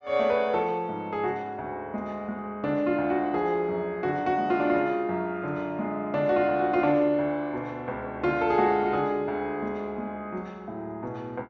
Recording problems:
low-pass filter; nothing above 8 kHz

